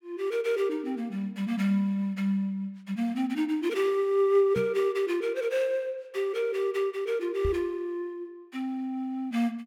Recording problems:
knock on the microphone; at 4.5 s and at 7.5 s; peak 0 dB vs average level

